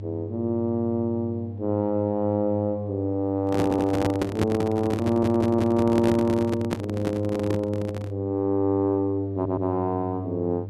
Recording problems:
hum; 50 Hz, harmonics up to 500 Hz, SNR 9 dB
microphone handling noise; from 3.5 to 8 s; peak +3 dB vs average level
stutter; at 3.5 s, at 5 s and at 9.5 s

